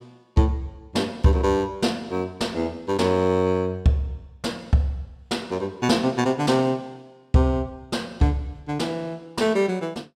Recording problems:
none

